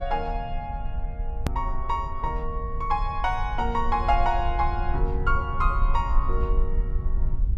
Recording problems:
low-frequency rumble; below 56 Hz, strongest tone 22 Hz, SNR 2 dB
hard cut with a click; at 1.5 s

